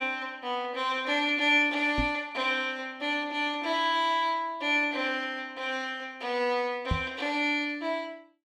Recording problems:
microphone bump; at 2 s and at 7 s; peak +2 dB vs average level

